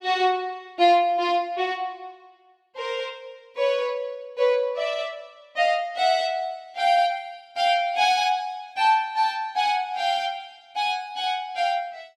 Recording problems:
none

